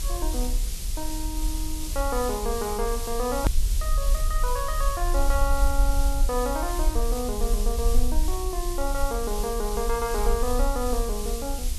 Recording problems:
background hiss; SNR 6 dB
rumble; below 46 Hz, SNR 0 dB
edit click; at 3.5 s

